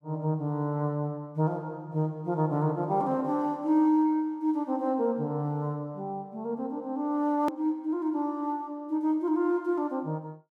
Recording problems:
hard cut with a click; at 7.5 s

